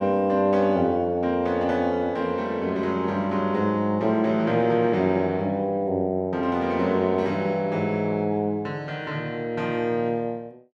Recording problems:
none

